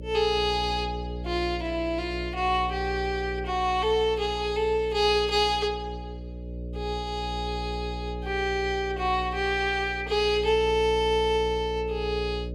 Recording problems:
hum; 60 Hz, harmonics up to 600 Hz, SNR 10 dB

